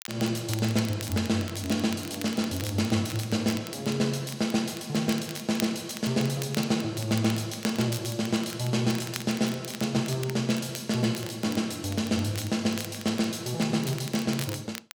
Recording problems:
crackling; vinyl, SNR 14 dB

